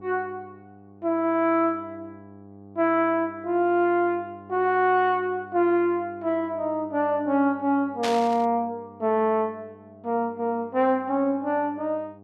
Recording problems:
hum; 50 Hz, harmonics up to 1.1 kHz, SNR 23 dB
static burst; at 8 s; peak -2 dB vs average level

